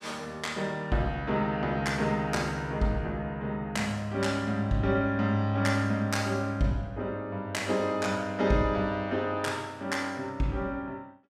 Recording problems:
none

